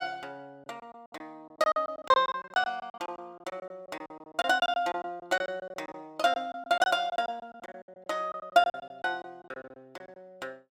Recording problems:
lost packets; 18% of the sound replaced, filled with silence

